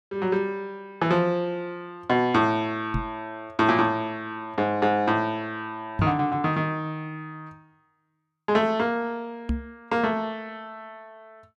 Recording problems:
microphone thump; at 3 s, at 6 s and at 9.5 s; peak +3 dB vs average level

